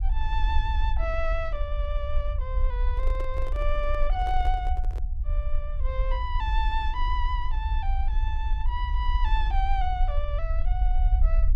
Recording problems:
rumble; below 54 Hz, SNR -4 dB
handling noise; from 3 to 5 s; peak -5 dB vs average level

